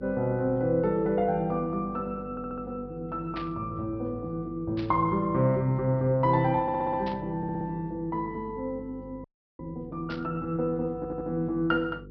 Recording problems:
treble cut off; nothing above 5.5 kHz
hum; 50 Hz, harmonics up to 500 Hz, SNR 17 dB
stutter; 4 times, first at 2.5 s
burst of static; 4 times, first at 3.5 s; peak -7 dB vs average level
frozen audio; at 9 s

